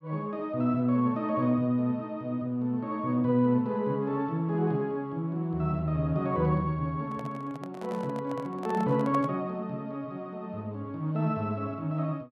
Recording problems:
microphone handling noise; from 7 to 9.5 s; peak -6 dB vs average level

